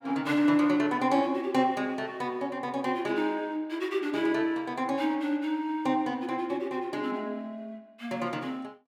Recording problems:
none

